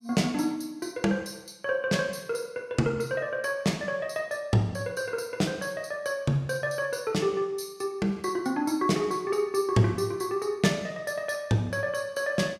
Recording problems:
none

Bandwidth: 16 kHz